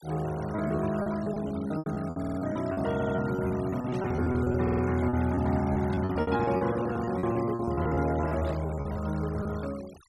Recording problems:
denoising artefacts; signal-to-artefact ratio 18 dB
lost packets; 15% of the sound replaced, filled with repeated pitch periods
stutter; at 2 s, at 3 s and at 4.5 s
burst of static; at 4 s, at 6 s and at 8.5 s; peak -16 dB vs average level

